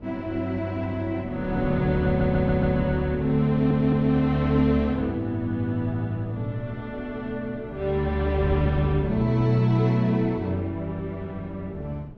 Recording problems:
wind noise; below 260 Hz, SNR 13 dB
audio stuttering; at 2 s and at 3.5 s

